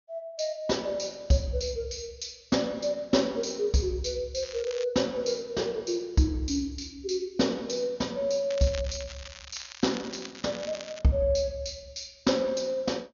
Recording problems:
low-pass filter; nothing above 6.9 kHz
crackle; at 4.5 s and from 8.5 to 11 s; loose cable, SNR 14 dB

